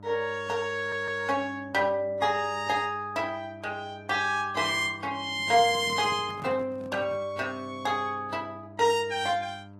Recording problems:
lossy codec; AAC, log-spectral distance 2 dB, nothing above 13.5 kHz
hum; 50 Hz, harmonics up to 1.3 kHz, SNR 20 dB
stutter; at 1 s
handling noise; from 5.5 to 7.5 s; peak -10 dB vs average level

